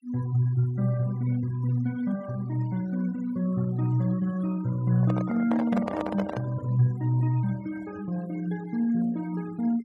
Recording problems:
denoising artefacts; signal-to-artefact ratio 20 dB
handling noise; from 5 to 6.5 s; peak -1 dB vs average level

